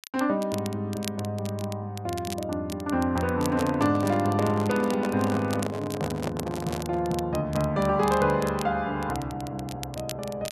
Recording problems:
crackle; vinyl, SNR 15 dB
handling noise; from 3.5 to 7 s; peak -1 dB vs average level

